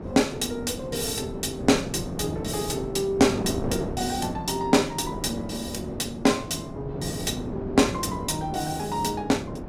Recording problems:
wind on the microphone; below 460 Hz, SNR 8 dB

